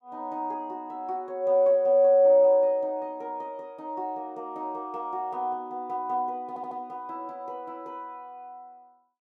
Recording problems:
stutter; at 6.5 s

